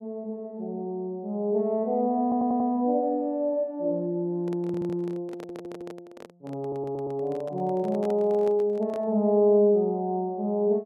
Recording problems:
stutter; 4 times, first at 2 s
microphone handling noise; from 4.5 to 9 s; peak -9 dB vs average level

